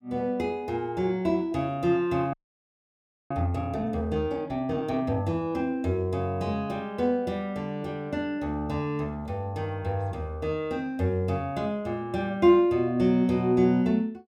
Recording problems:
frozen audio; at 2.5 s for 1 s

